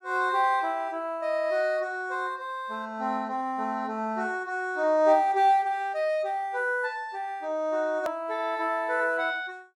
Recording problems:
hard cut with a click; at 8 s

